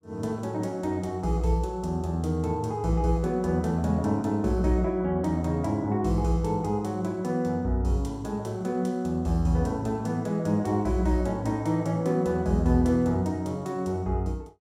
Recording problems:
none

